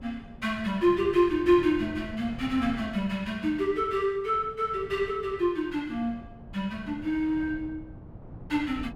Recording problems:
wind on the microphone; below 240 Hz, SNR 17 dB

